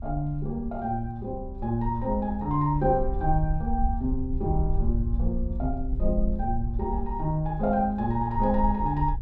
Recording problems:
wind on the microphone; below 62 Hz, SNR 5 dB

